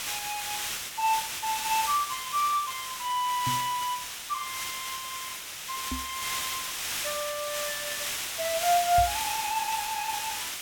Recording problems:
hiss; slope +2 dB per octave, SNR 2 dB
microphone bump; at 3.5 s, at 6 s and at 9 s; peak 0 dB vs average level

